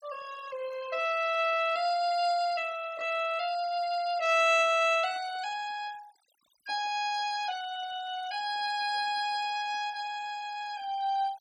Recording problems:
noise reduction artefacts; signal-to-artefact ratio 19 dB

